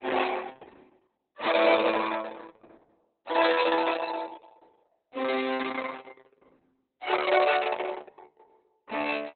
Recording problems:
lossy compression; Opus, log-spectral distance 6 dB, nothing above 4 kHz

